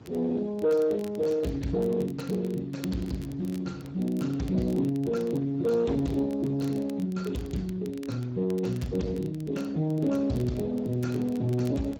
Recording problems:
lossy compression; Speex, log-spectral distance 3 dB, nothing above 16.6 kHz
distortion; soft clipping, signal-to-distortion ratio 11 dB
wind on the microphone; below 480 Hz, SNR 23 dB
crackling; vinyl, SNR 25 dB

